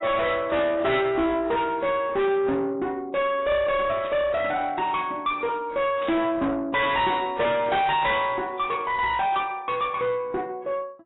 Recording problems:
lossy codec; AAC, log-spectral distance 3 dB, nothing above 3.8 kHz
distortion; soft clipping, signal-to-distortion ratio 6 dB
burst of static; at 4 s and at 6 s; peak -11 dB vs average level

